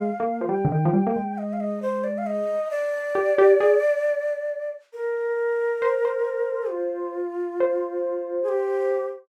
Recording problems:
none

